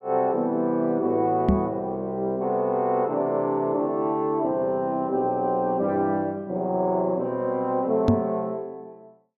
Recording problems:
microphone thump; at 1.5 s and at 8 s; peak +8 dB vs average level

